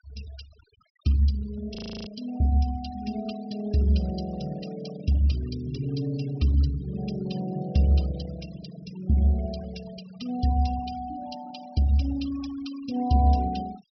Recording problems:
treble cut off; nothing above 5.5 kHz
noise reduction artefacts; signal-to-artefact ratio 17 dB
frozen audio; at 2 s

